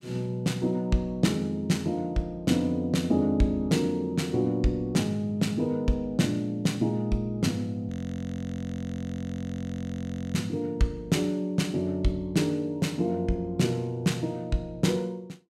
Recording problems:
frozen audio; at 8 s for 2.5 s

